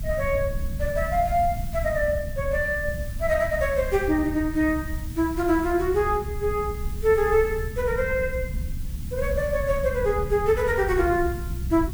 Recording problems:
background hiss; slope +1 dB per octave, SNR 20 dB
low-frequency rumble; below 98 Hz, SNR 8 dB

